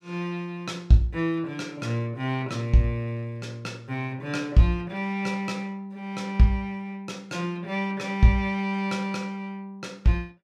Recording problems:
none

